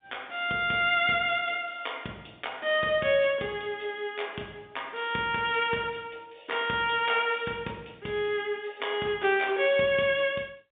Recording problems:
telephone audio; 150 Hz to 3.7 kHz, G.711

